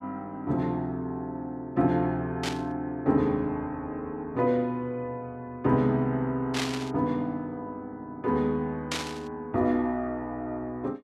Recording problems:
burst of static; at 2.5 s, at 6.5 s and at 9 s; peak +3 dB vs average level

